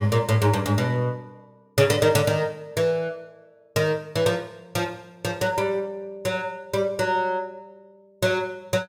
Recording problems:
none

